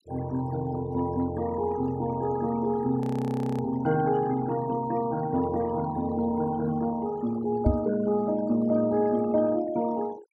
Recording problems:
denoising artefacts; signal-to-artefact ratio 17 dB
frozen audio; at 3 s for 0.5 s
microphone bump; at 7.5 s; peak +7 dB vs average level

